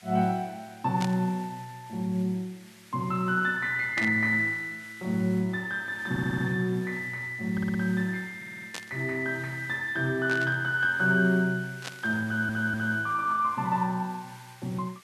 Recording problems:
hiss; SNR 24 dB
burst of static; 5 times, first at 1 s; peak -4 dB vs average level
stutter; 4 times, first at 6 s

